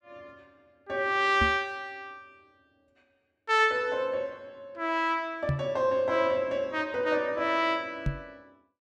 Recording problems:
knock on the microphone; at 1.5 s, at 5.5 s and at 8 s; peak +2 dB vs average level

